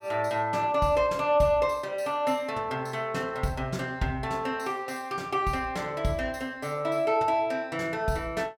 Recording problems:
none

